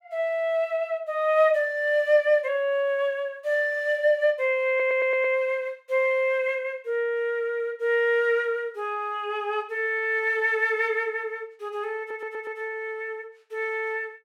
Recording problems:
stutter; at 4.5 s and at 12 s

